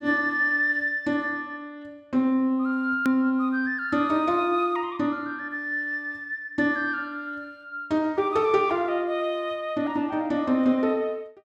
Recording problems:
edit click; at 3 s

